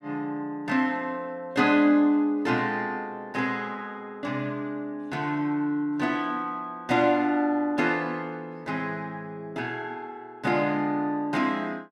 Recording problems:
none

